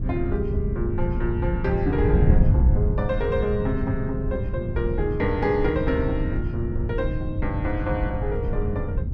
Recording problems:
wind on the microphone; below 130 Hz, SNR -1 dB

